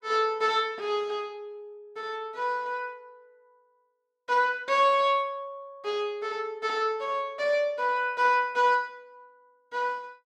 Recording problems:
none

